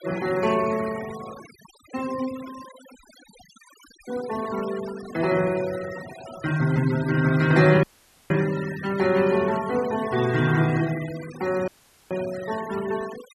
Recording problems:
noise reduction artefacts; signal-to-artefact ratio 16 dB
audio cutting out; at 8 s and at 12 s

